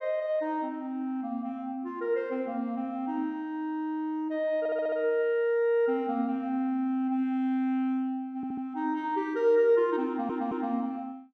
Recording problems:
stutter; at 4.5 s, at 8.5 s and at 10 s

